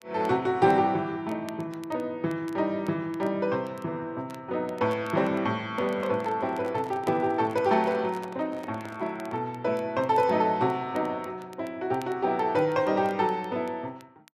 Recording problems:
crackling; vinyl, SNR 28 dB
microphone handling noise; from 6 to 9.5 s; peak -11 dB vs average level

